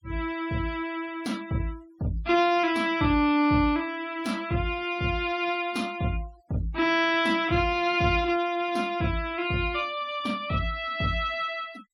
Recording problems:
noise reduction artefacts; signal-to-artefact ratio 23 dB

